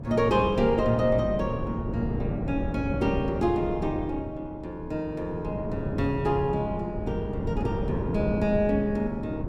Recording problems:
wind noise; below 290 Hz, SNR 5 dB

